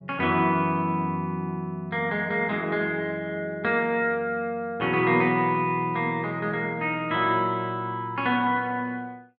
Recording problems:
none

